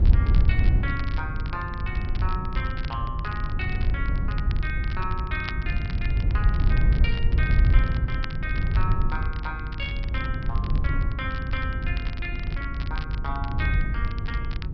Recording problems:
treble missing; nothing above 5.5 kHz
hum; 50 Hz, harmonics up to 400 Hz, SNR 2 dB
wind noise; below 88 Hz, SNR -7 dB
crackling; vinyl, SNR 11 dB

